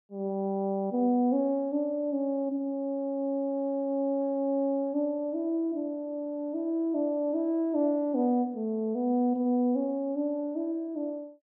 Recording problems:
none

